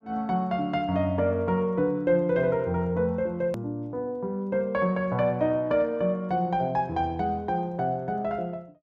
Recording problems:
hard cut with a click; at 3.5 s

